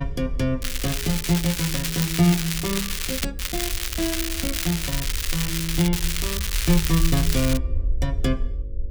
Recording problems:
electrical hum; 50 Hz, harmonics up to 550 Hz, SNR 22 dB
rumble; below 56 Hz, SNR 6 dB
crackling; from 0.5 to 3.5 s, from 3.5 to 6 s and from 6 to 7.5 s; loose cable, SNR 1 dB

